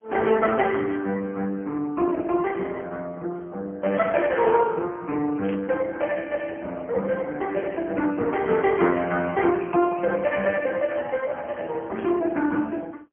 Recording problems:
telephone audio; 110 Hz to 3.3 kHz, AMR-NB, then MP3
burst of static; at 4 s, at 5.5 s and at 12 s; peak -11 dB vs average level

